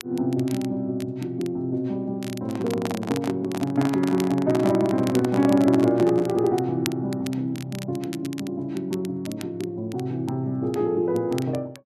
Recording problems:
crackle; vinyl, SNR 18 dB
handling noise; from 2.5 to 6.5 s; peak -1 dB vs average level

